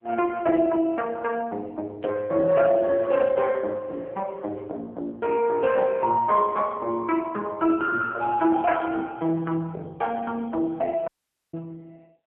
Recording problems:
phone line; 170 Hz to 3.2 kHz, AMR-NB
static burst; at 2 s; peak -20 dB vs average level
dropout; at 11 s

